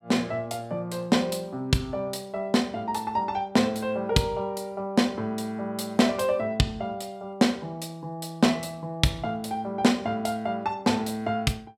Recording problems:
none

